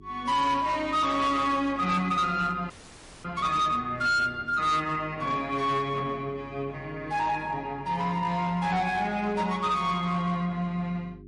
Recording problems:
lossy codec; MP3, log-spectral distance 2 dB, nothing above 10.1 kHz
distorted audio; hard clipping, signal-to-distortion ratio 12 dB
hum; 50 Hz, harmonics up to 400 Hz, SNR 21 dB
frozen audio; at 2.5 s for 0.5 s

